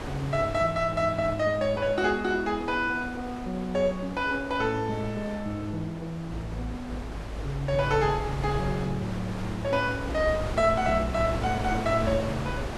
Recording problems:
wind on the microphone; below 870 Hz, SNR 9 dB

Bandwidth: 12.5 kHz